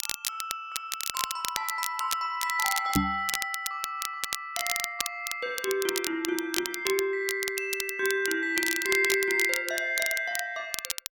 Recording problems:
crackling; vinyl, SNR 4 dB
microphone thump; at 3 s; peak +7 dB vs average level

